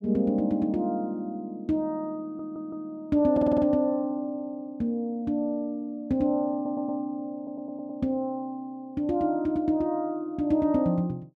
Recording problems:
stutter; 4 times, first at 2 s

